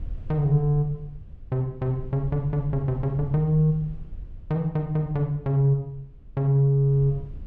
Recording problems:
low-frequency rumble; below 74 Hz, SNR 17 dB

